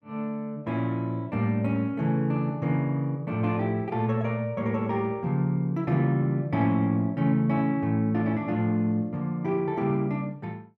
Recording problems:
none

